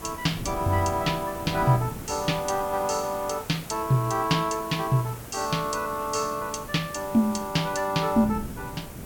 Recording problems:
background hiss; slope -5 dB per octave, SNR 15 dB
wind on the microphone; below 260 Hz, SNR 16 dB

